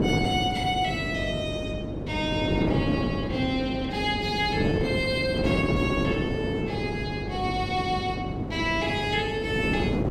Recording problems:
electrical hum; 50 Hz, harmonics up to 500 Hz, SNR 12 dB
wind on the microphone; below 410 Hz, SNR 1 dB

